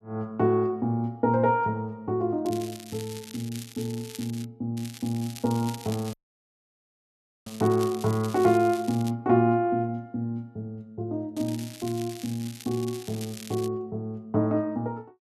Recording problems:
crackling; from 2.5 to 4.5 s, from 5 to 9 s and from 11 to 14 s; loose cable, SNR 16 dB
dropout; at 6 s for 1.5 s

